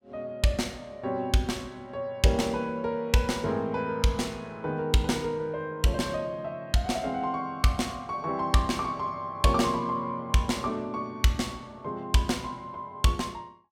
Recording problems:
none

